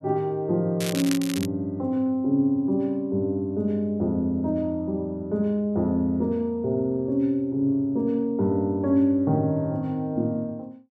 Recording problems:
crackle; at 1 s; loose cable, SNR 9 dB

